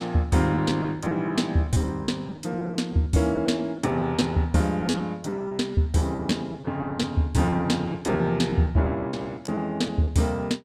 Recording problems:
packet loss; 11% of the sound replaced, filled with repeated pitch periods

